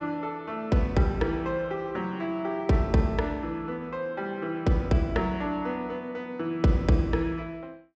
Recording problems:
treble missing; nothing above 8 kHz

